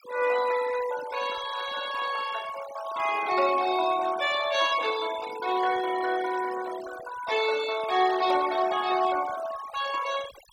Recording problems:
denoising artefacts; signal-to-artefact ratio 13 dB

